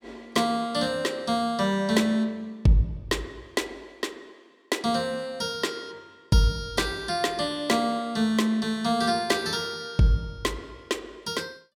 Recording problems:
none

